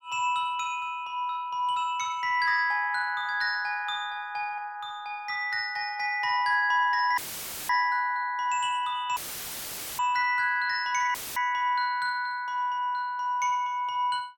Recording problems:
dropout; at 7 s for 0.5 s, at 9 s for 1 s and at 11 s; filled with static

